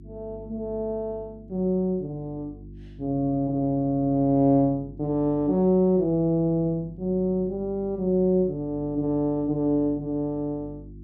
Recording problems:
electrical hum; 50 Hz, harmonics up to 350 Hz, SNR 19 dB

